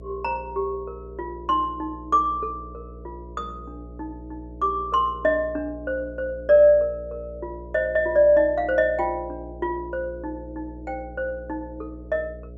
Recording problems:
hum; 60 Hz, harmonics up to 660 Hz, SNR 18 dB

